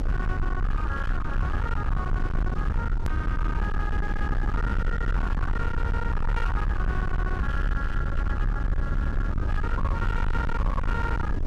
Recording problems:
distorted audio; hard clipping, signal-to-distortion ratio 7 dB
rumble; below 86 Hz, SNR -5 dB
click at an edit; at 3 s

